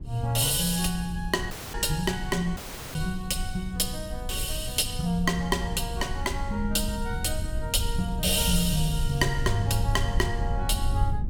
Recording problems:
low-frequency rumble; below 84 Hz, SNR 6 dB
dropout; at 1.5 s and at 2.5 s

